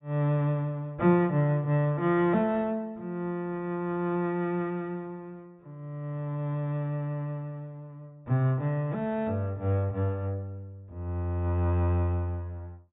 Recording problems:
treble cut off; nothing above 4 kHz

